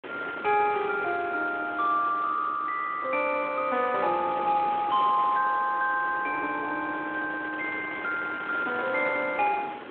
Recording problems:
telephone audio; 320 Hz to 3.4 kHz, Speex
wind on the microphone; below 1.9 kHz, SNR 14 dB

